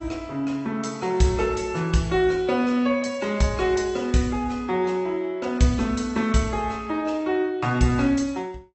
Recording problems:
low-pass filter; nothing above 8 kHz
lossy compression; AAC, log-spectral distance 3 dB

